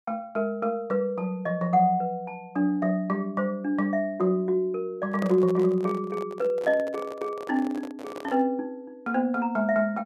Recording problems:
handling noise; from 5 to 8.5 s; peak -4 dB vs average level

